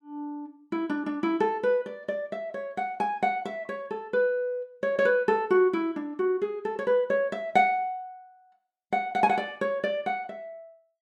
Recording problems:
none

